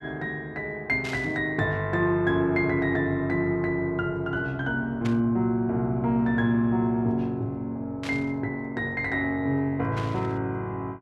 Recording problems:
burst of static; 4 times, first at 1 s; peak -7 dB vs average level

